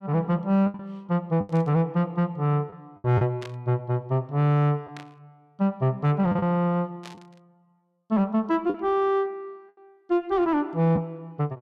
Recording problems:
distortion; soft clipping, signal-to-distortion ratio 12 dB
packet loss; 4% of the sound replaced, filled with the last packet
burst of static; 4 times, first at 1.5 s; peak -12 dB vs average level

